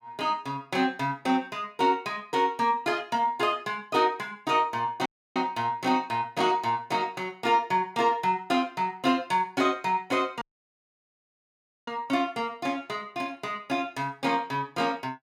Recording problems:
dropout; at 5 s and at 10 s for 1.5 s

